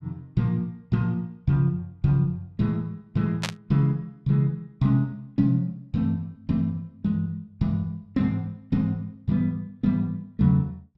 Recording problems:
static burst; at 3.5 s; peak +1 dB vs average level

